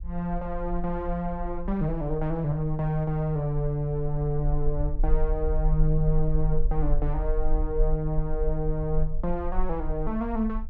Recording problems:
low-frequency rumble; below 40 Hz, strongest tone 18 Hz, SNR 4 dB

